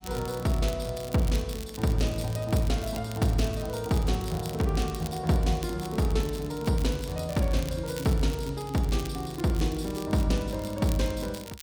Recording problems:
crackle; vinyl, SNR 16 dB

